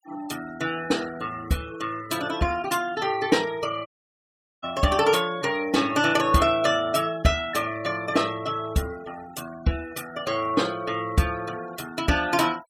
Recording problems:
denoising artefacts; signal-to-artefact ratio 18 dB
audio cutting out; at 4 s for 1 s

